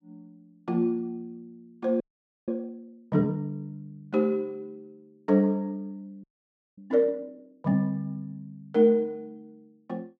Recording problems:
frozen audio; at 2 s and at 6 s for 0.5 s

